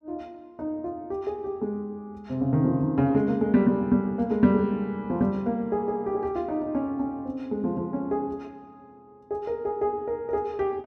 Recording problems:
none

